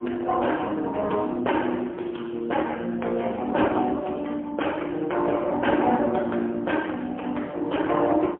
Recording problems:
telephone audio; 260 Hz to 3.4 kHz, AMR-NB, then MP3

